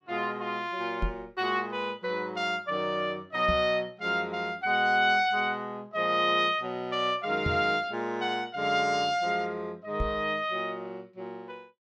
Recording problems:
microphone thump; 4 times, first at 1 s; peak 0 dB vs average level

